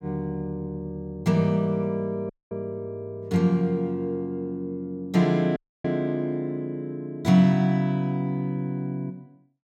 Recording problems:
audio cutting out; at 2.5 s and at 5.5 s

